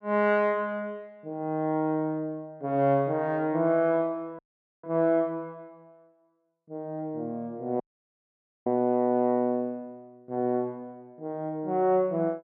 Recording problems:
dropout; at 4.5 s and at 8 s for 1 s

